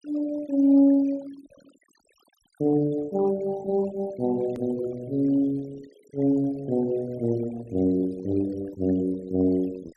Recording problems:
denoising artefacts; signal-to-artefact ratio 24 dB
hard cut with a click; at 4.5 s

